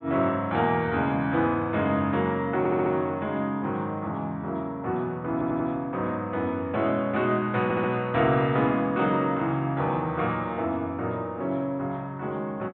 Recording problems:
treble missing; nothing above 4 kHz
stutter; at 2.5 s, at 5.5 s and at 7.5 s

